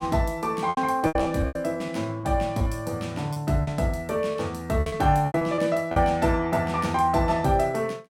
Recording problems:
packet loss; 10% of the sound replaced, filled with repeated pitch periods

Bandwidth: 16.5 kHz